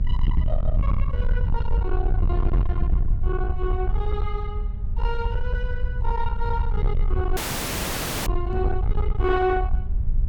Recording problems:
distorted audio; soft clipping, signal-to-distortion ratio 7 dB
hum; 50 Hz, harmonics up to 800 Hz, SNR 14 dB
low-frequency rumble; below 68 Hz, SNR -4 dB
dropout; at 7.5 s for 1 s
knock on the microphone; at 8.5 s; peak +1 dB vs average level

